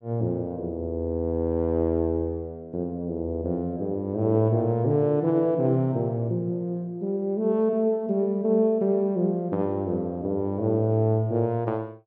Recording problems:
none

